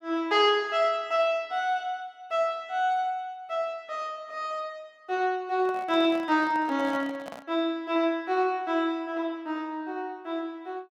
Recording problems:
handling noise; from 5.5 to 7.5 s; peak -9 dB vs average level

